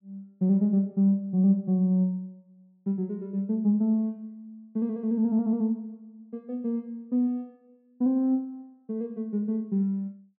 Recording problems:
none

